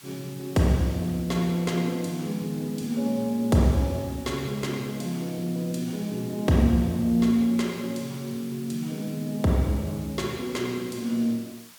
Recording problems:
background hiss; slope +2 dB per octave, SNR 19 dB

